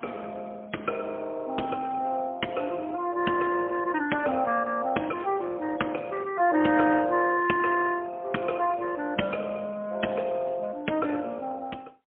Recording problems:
phone line; 220 Hz to 3.3 kHz, AMR-NB, then MP3

